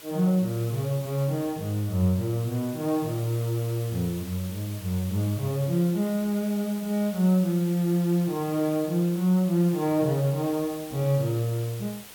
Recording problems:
background hiss; slope -1 dB per octave, SNR 17 dB

